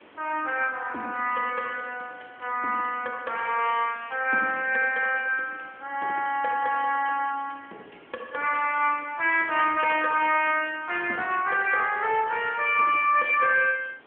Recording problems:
phone line; 240 Hz to 3.3 kHz, AMR-NB
background hiss; SNR 28 dB

